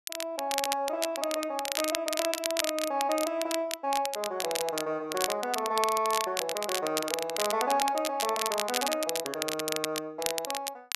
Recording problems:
crackling; vinyl, SNR 3 dB

